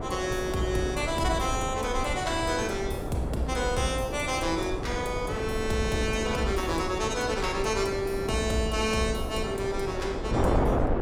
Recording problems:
wind on the microphone; below 560 Hz, SNR 4 dB

